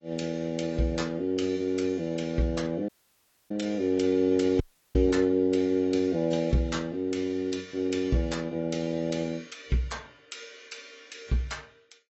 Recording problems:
lossy codec; AAC, log-spectral distance 3 dB, nothing above 7.8 kHz
dropout; at 3 s for 0.5 s and at 4.5 s

